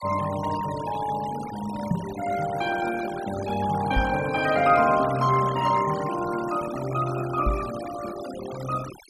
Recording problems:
denoising artefacts; signal-to-artefact ratio 13 dB
knock on the microphone; at 2 s, at 4 s and at 7.5 s; peak +4 dB vs average level

